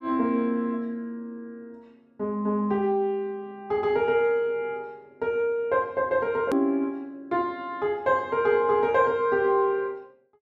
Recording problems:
edit click; at 6.5 s

